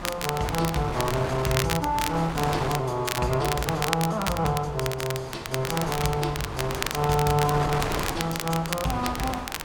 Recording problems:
wind noise; below 1.4 kHz, SNR 7 dB
crackle; vinyl, SNR 6 dB

